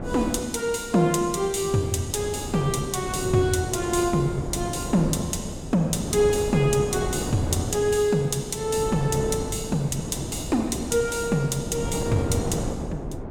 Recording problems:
wind on the microphone; below 430 Hz, SNR 8 dB

